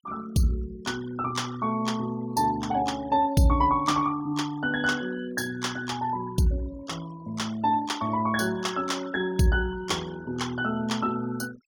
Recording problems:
denoising artefacts; signal-to-artefact ratio 19 dB

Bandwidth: 18 kHz